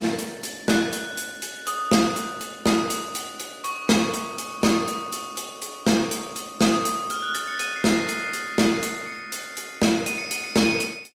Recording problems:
lossy compression; Opus, log-spectral distance 5 dB

